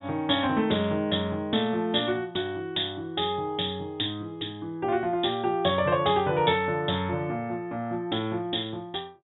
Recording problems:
treble missing; nothing above 3.8 kHz

